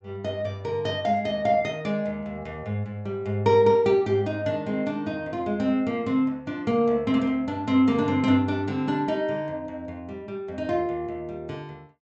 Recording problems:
treble missing; nothing above 7.9 kHz

